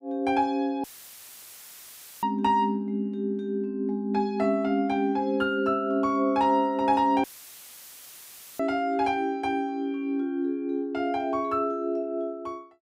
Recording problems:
dropout; at 1 s for 1.5 s and at 7 s for 1.5 s; filled with static

